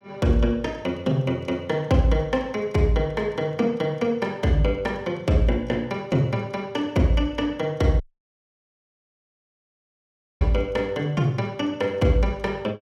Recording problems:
dropout; at 8 s for 2.5 s

